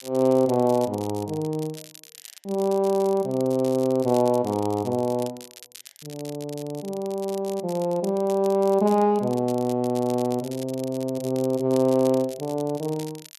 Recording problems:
crackling; vinyl, SNR 19 dB

